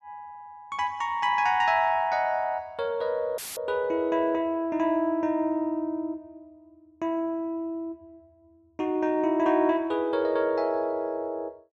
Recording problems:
audio cutting out; at 3.5 s; filled with static

